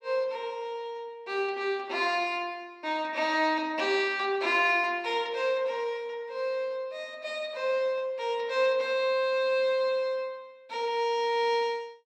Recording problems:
none

